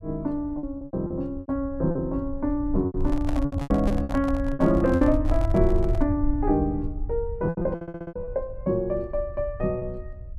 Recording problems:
low-frequency rumble; below 78 Hz, SNR 6 dB
lost packets; 11% of the sound replaced, filled with repeated pitch periods
microphone handling noise; from 3 to 6 s; peak -5 dB vs average level
stutter; at 8 s

